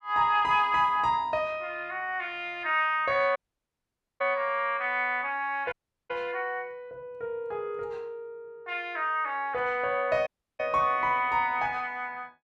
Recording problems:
audio cutting out; at 3.5 s for 1 s, at 5.5 s and at 10 s

